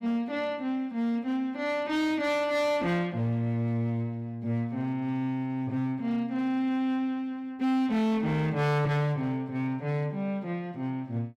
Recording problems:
distortion; hard clipping, signal-to-distortion ratio 11 dB

